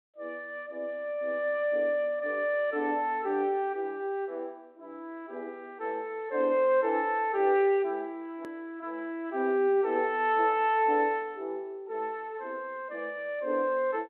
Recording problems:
phone line; 220 Hz to 3.5 kHz, G.726
edit click; at 8.5 s

